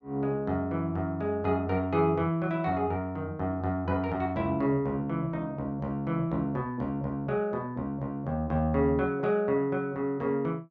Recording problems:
none

